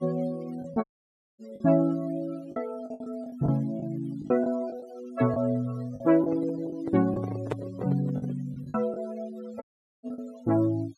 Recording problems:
noise reduction artefacts; signal-to-artefact ratio 22 dB
packet loss; 8% of the sound replaced, filled with the last packet
dropout; at 1 s for 0.5 s and at 9.5 s
handling noise; from 6 to 8.5 s; peak +3 dB vs average level

